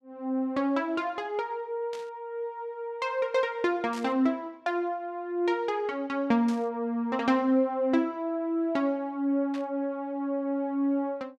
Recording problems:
static burst; 4 times, first at 2 s; peak -11 dB vs average level

